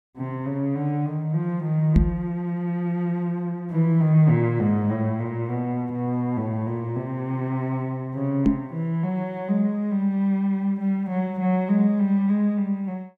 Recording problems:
microphone bump; at 2 s and at 8.5 s; peak +8 dB vs average level

